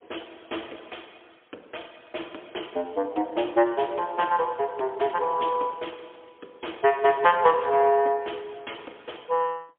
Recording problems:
phone line; 260 Hz to 3.5 kHz, AMR-NB, then MP3

